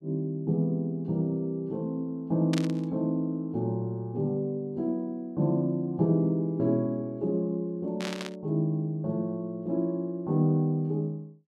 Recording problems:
static burst; at 2.5 s and at 8 s; peak -2 dB vs average level

